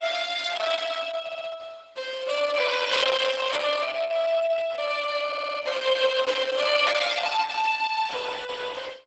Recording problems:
codec artefacts; Opus, log-spectral distance 6 dB, nothing above 8 kHz
stutter; at 1 s and at 5.5 s

